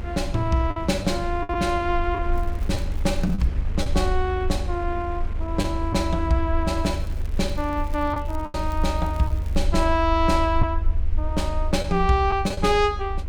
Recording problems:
rumble; below 78 Hz, SNR 4 dB
wind on the microphone; below 420 Hz, SNR 15 dB
packet loss; 4% of the sound replaced, filled with the last packet
crackle; from 2.5 to 3.5 s and from 7 to 9.5 s; loose cable, SNR 26 dB

